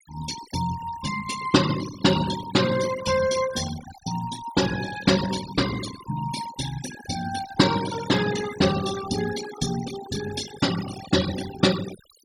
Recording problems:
denoising artefacts; signal-to-artefact ratio 10 dB

